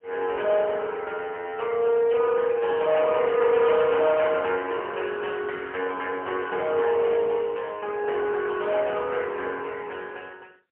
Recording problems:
telephone audio; 320 Hz to 3.1 kHz, AMR-NB, then MP3
distorted audio; hard clipping, uneven, signal-to-distortion ratio 12 dB

